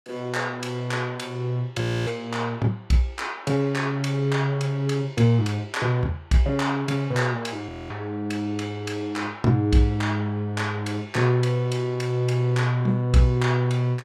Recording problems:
frozen audio; at 2 s and at 7.5 s

